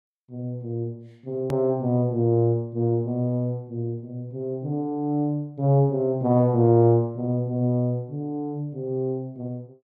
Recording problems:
hard cut with a click; at 1.5 s

